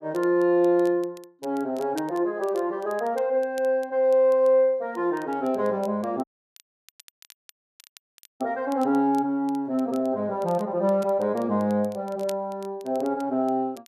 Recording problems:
crackle; vinyl, SNR 27 dB
audio cutting out; at 6 s for 2 s

